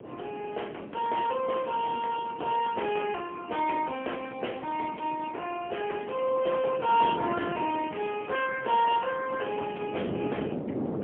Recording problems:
phone line; 300 Hz to 3.2 kHz, AMR-NB, then MP3
wind noise; below 480 Hz, SNR 10 dB
crackle; from 7.5 to 8.5 s; loose cable, SNR 27 dB

